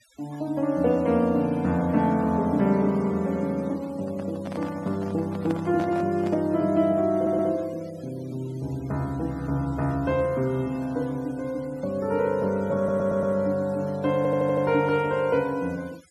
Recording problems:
denoising artefacts; signal-to-artefact ratio 26 dB
handling noise; from 4 to 6.5 s; peak -6 dB vs average level
audio stuttering; at 7 s, at 13 s and at 14 s

